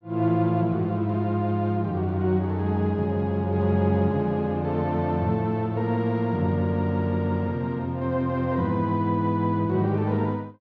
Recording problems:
none

